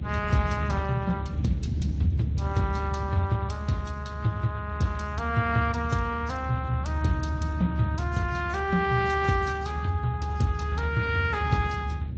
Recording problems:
lossy codec; Speex, then AAC, log-spectral distance 3 dB, nothing above 7.3 kHz
rumble; below 140 Hz, strongest tone 74 Hz, SNR 3 dB

